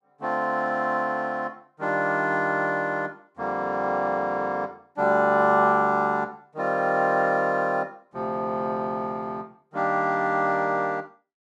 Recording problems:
none

